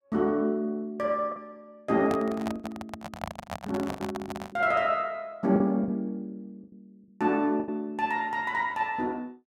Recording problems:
lost packets; 7% of the sound replaced, filled with the last packet
microphone handling noise; from 2 to 4.5 s; peak -2 dB vs average level

